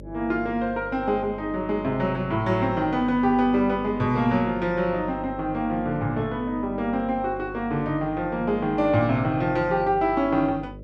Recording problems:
hum; 50 Hz, harmonics up to 600 Hz, SNR 17 dB

